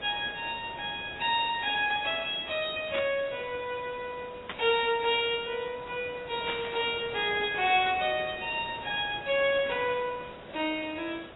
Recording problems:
lossy codec; AAC, log-spectral distance 11 dB, nothing above 3.4 kHz
background hiss; SNR 17 dB
burst of static; at 3 s, at 4.5 s and at 6.5 s; peak -3 dB vs average level

